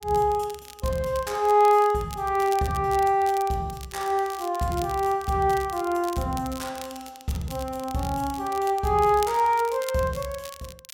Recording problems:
crackle; vinyl, SNR 18 dB

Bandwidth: 16.5 kHz